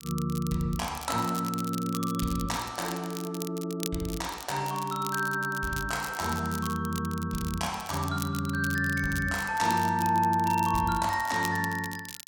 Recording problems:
crackling; vinyl, SNR 12 dB

